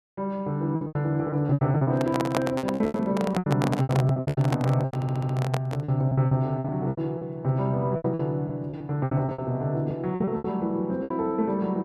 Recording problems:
packet loss; 17% of the sound replaced, filled with repeated pitch periods
handling noise; from 2 to 6 s; peak +3 dB vs average level
stutter; at 5 s

